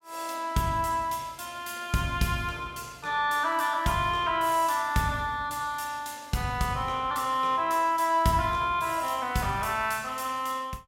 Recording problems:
none

